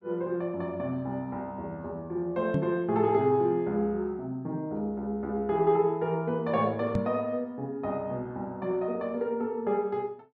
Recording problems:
microphone bump; at 2.5 s and at 7 s; peak +4 dB vs average level

